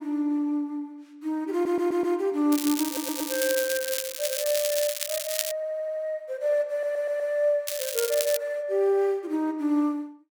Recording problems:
audio stuttering; 4 times, first at 1.5 s
crackle; from 2.5 to 5.5 s and at 7.5 s; loose cable, SNR 3 dB

